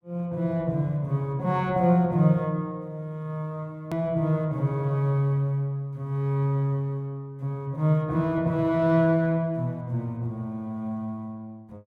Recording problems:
hard cut with a click; at 4 s

